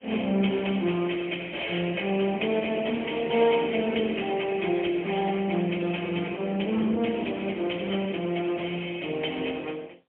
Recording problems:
phone line; 220 Hz to 3.3 kHz, AMR-NB, then MP3

